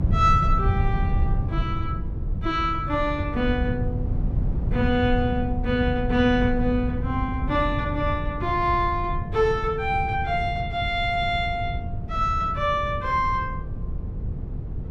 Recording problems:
electrical hum; 50 Hz, harmonics up to 500 Hz, SNR 22 dB
wind noise; below 130 Hz, SNR 4 dB

